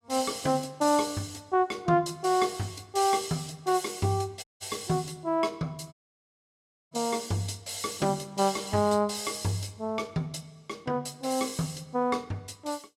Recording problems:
audio cutting out; at 4.5 s and at 6 s for 1 s

